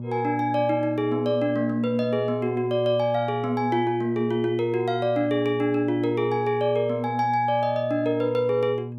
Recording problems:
electrical hum; 60 Hz, harmonics up to 600 Hz, SNR 10 dB

